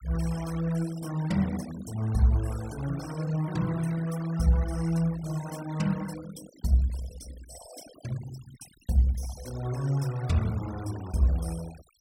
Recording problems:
noise reduction artefacts; signal-to-artefact ratio 18 dB

